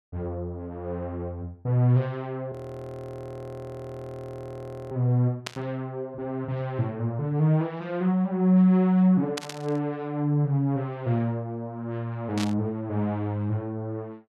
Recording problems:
frozen audio; at 2.5 s for 2.5 s
burst of static; at 5.5 s, at 9.5 s and at 12 s; peak -2 dB vs average level

